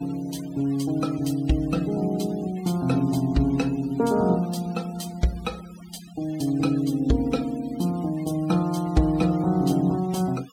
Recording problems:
denoising artefacts; signal-to-artefact ratio 21 dB

